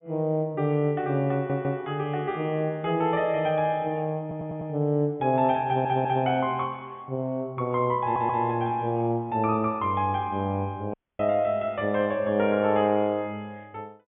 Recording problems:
low-pass filter; nothing above 3.5 kHz
audio stuttering; 4 times, first at 1.5 s
audio cutting out; at 11 s

